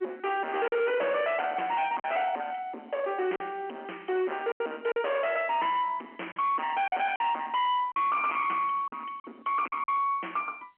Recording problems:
telephone audio; 220 Hz to 3.2 kHz, G.711
distortion; hard clipping, signal-to-distortion ratio 6 dB
packet loss; 5% of the sound replaced, filled with silence

